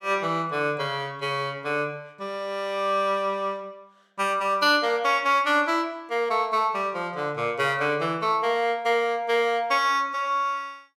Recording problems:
none

